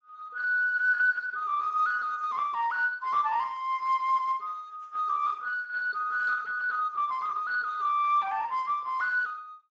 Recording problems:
codec artefacts; Speex, log-spectral distance 2 dB

